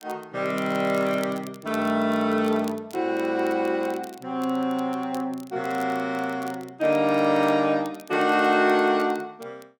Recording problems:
crackle; vinyl, SNR 25 dB

